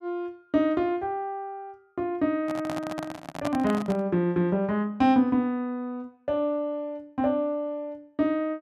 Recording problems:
microphone handling noise; from 2.5 to 4 s; peak 0 dB vs average level

